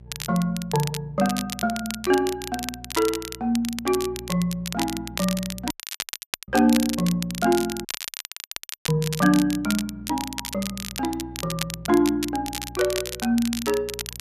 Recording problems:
electrical hum; 60 Hz, harmonics up to 600 Hz, SNR 19 dB
crackling; vinyl, SNR 8 dB
dropout; at 5.5 s for 1 s and at 8 s for 1 s

